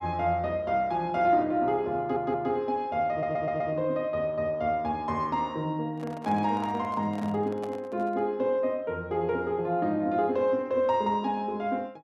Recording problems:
stutter; at 2 s and at 3 s
microphone handling noise; from 6 to 8.5 s; peak -10 dB vs average level

